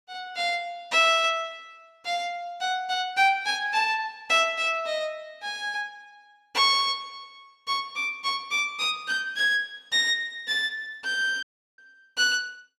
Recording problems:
audio cutting out; at 11 s

